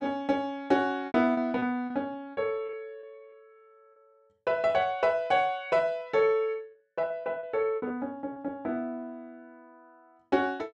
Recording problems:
packet loss; 7% of the sound replaced, filled with repeated pitch periods

